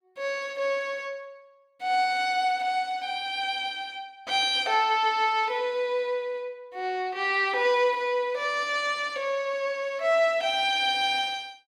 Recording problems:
none

